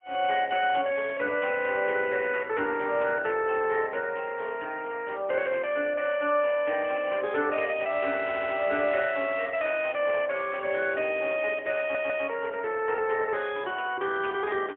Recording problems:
telephone audio; 280 Hz to 3.3 kHz, AMR-NB, then MP3
stutter; at 8 s and at 12 s

